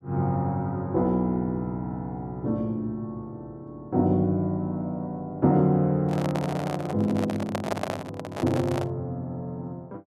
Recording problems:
handling noise; from 6 to 9 s; peak +3 dB vs average level

